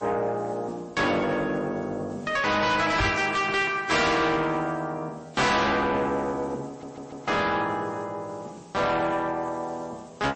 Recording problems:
codec artefacts; AAC, then MP3, log-spectral distance 5 dB, nothing above 8.2 kHz
distorted audio; soft clipping, signal-to-distortion ratio 7 dB
background hiss; slope -1 dB per octave, SNR 30 dB
knock on the microphone; at 3 s; peak +3 dB vs average level
audio stuttering; at 6.5 s

